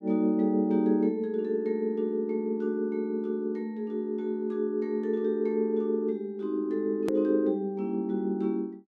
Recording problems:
click at an edit; at 7 s

